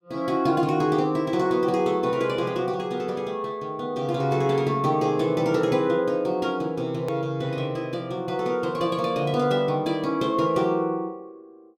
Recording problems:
hard cut with a click; at 7 s

